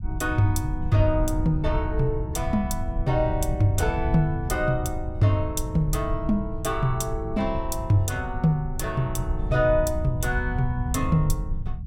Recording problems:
low-frequency rumble; below 94 Hz, SNR 5 dB

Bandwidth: 16.5 kHz